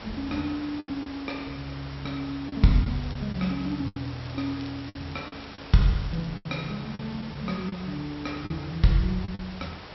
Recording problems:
treble cut off; nothing above 5.6 kHz
hum; 50 Hz, harmonics up to 400 Hz, SNR 23 dB
background hiss; slope -3 dB per octave, SNR 13 dB
packet loss; 7% of the sound replaced, filled with the last packet
crackle; from 2.5 to 6.5 s; loose cable, SNR 22 dB

